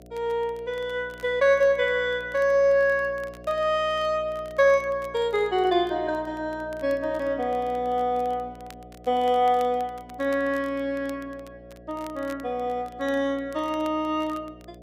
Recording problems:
hum; 60 Hz, harmonics up to 720 Hz, SNR 22 dB
crackle; vinyl, SNR 29 dB

